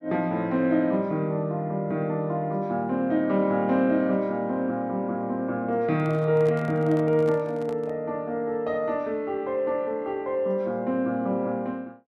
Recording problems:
microphone handling noise; from 6 to 8 s; peak -11 dB vs average level

